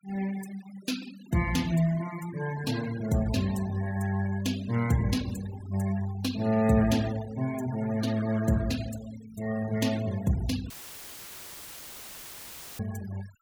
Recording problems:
noise reduction artefacts; signal-to-artefact ratio 16 dB
audio cutting out; at 11 s for 2 s; filled with static

